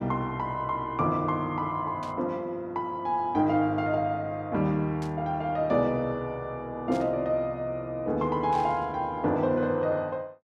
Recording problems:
burst of static; 4 times, first at 2 s; peak -13 dB vs average level

